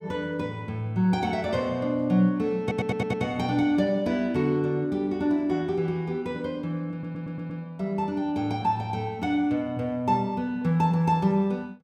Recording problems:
audio stuttering; at 2.5 s and at 7 s

